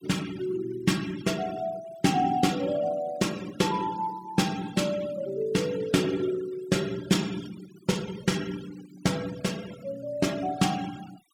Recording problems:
noise reduction artefacts; signal-to-artefact ratio 17 dB

